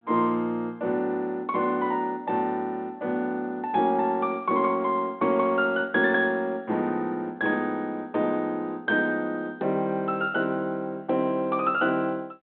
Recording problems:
telephone audio; 150 Hz to 3.5 kHz, G.726

